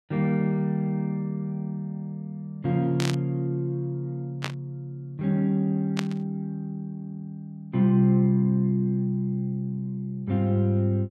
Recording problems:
static burst; at 3 s, at 4.5 s and at 6 s; peak 0 dB vs average level

